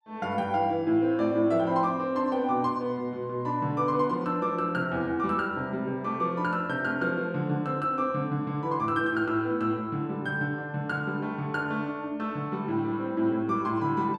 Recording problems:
none

